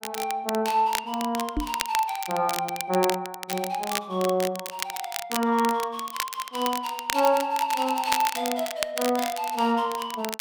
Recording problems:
crackle; vinyl, SNR 7 dB
knock on the microphone; at 1.5 s; peak +2 dB vs average level

